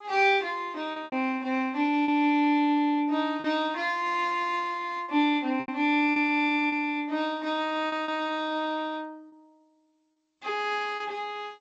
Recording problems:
lossy codec; G.722, then AAC, log-spectral distance 2 dB
packet loss; 5% of the sound replaced, filled with repeated pitch periods

